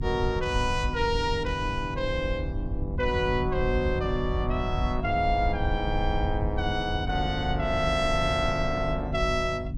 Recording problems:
hum; 50 Hz, harmonics up to 300 Hz, SNR 8 dB
wind on the microphone; below 86 Hz, SNR 5 dB

